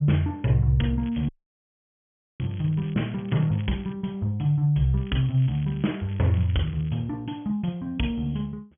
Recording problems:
low-pass filter; nothing above 3.3 kHz
crackling; from 1 to 3 s, at 3 s and from 5 to 7 s; loose cable, SNR 25 dB
dropout; at 1.5 s for 1 s

